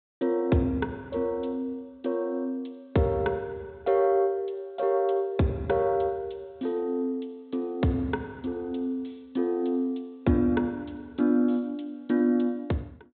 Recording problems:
treble cut off; nothing above 4 kHz

